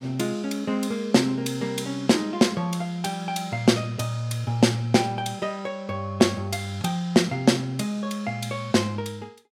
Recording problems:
none

